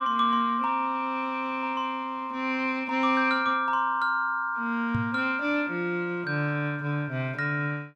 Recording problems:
microphone bump; at 5 s; peak +1 dB vs average level

